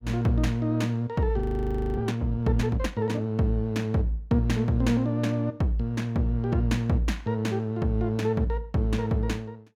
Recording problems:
audio freezing; at 1.5 s for 0.5 s

